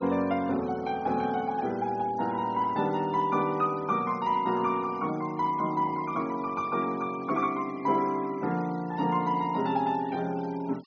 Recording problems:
low-pass filter; nothing above 6.4 kHz
noise reduction artefacts; signal-to-artefact ratio 23 dB

